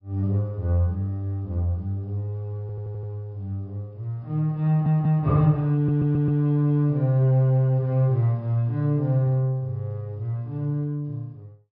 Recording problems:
low-pass filter; nothing above 5.5 kHz
audio stuttering; at 2.5 s, at 4.5 s and at 6 s

